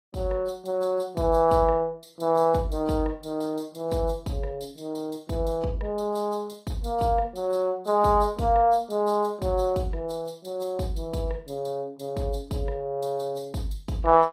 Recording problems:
lossy compression; AAC, log-spectral distance 2 dB, nothing above 15.1 kHz

